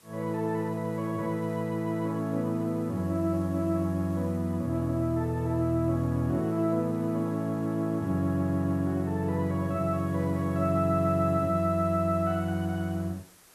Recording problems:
background hiss; slope -2 dB per octave, SNR 27 dB

